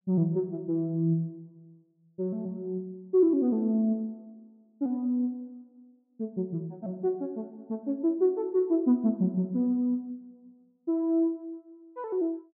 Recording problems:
none

